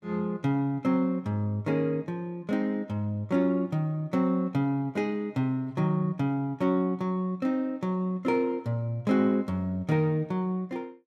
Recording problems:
none

